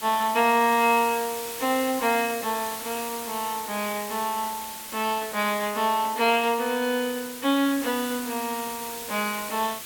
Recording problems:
background hiss; slope 0 dB per octave, SNR 9 dB

